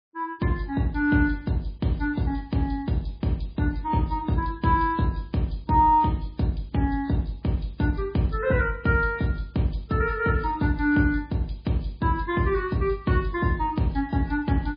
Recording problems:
codec artefacts; MP3, log-spectral distance 2 dB, nothing above 4.1 kHz

